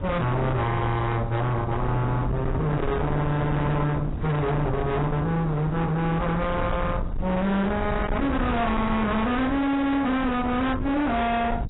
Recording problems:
codec artefacts; AAC, log-spectral distance 2 dB, nothing above 3.8 kHz
distortion; hard clipping, signal-to-distortion ratio 6 dB
low-frequency rumble; below 310 Hz, SNR 6 dB
wind noise; below 490 Hz, SNR 14 dB

